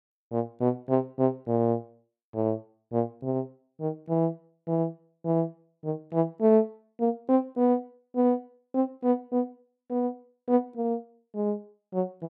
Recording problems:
none

